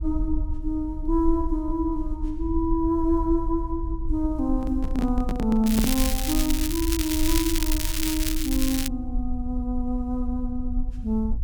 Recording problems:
low-frequency rumble; below 52 Hz, SNR 5 dB
handling noise; from 4.5 to 6 s; peak +3 dB vs average level
crackle; from 5.5 to 9 s; loose cable, SNR 2 dB

